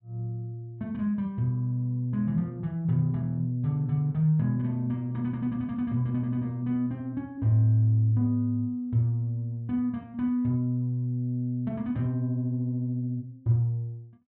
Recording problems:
none

